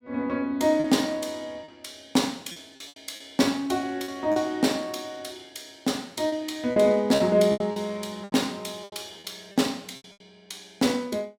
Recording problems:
lost packets; 9% of the sound replaced, filled with repeated pitch periods

